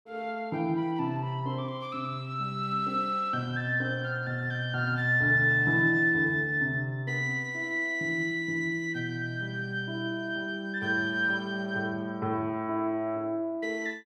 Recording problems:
none

